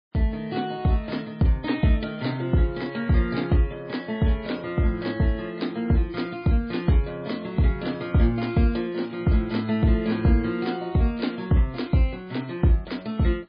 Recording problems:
codec artefacts; MP3, log-spectral distance 3 dB, nothing above 4.2 kHz

